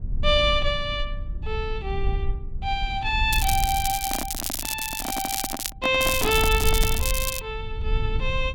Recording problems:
rumble; below 68 Hz, SNR 5 dB
crackling; from 3.5 to 5.5 s and from 6 to 7.5 s; loose cable, SNR 3 dB
handling noise; from 4 to 7 s; peak 0 dB vs average level

